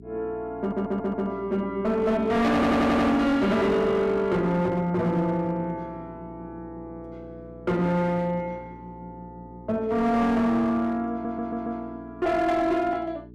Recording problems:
distortion; hard clipping, uneven, signal-to-distortion ratio 8 dB
hum; 60 Hz, harmonics up to 420 Hz, SNR 21 dB
audio stuttering; at 0.5 s, at 2.5 s and at 11 s

